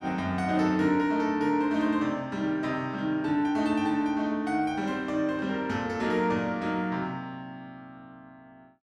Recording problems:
none

